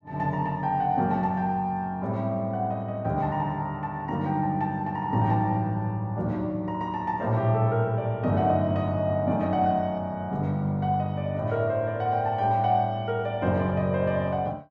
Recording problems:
none

